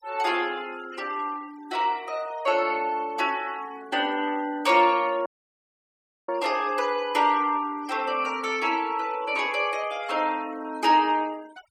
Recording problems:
denoising artefacts; signal-to-artefact ratio 22 dB
dropout; at 5.5 s for 1 s

